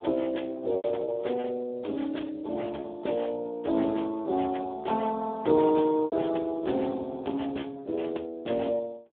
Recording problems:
phone line; 280 Hz to 3.8 kHz, Speex
packet loss; 4% of the sound replaced, filled with repeated pitch periods

